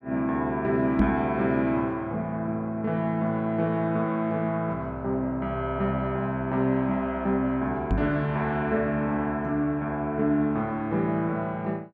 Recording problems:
knock on the microphone; at 1 s and at 8 s; peak +6 dB vs average level

